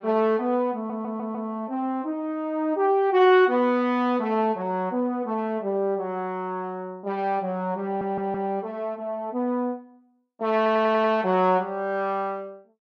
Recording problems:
audio stuttering; at 1 s, at 8 s and at 11 s

